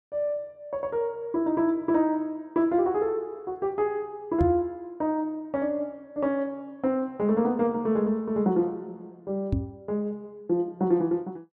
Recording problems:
microphone bump; at 4.5 s and at 9.5 s; peak +5 dB vs average level

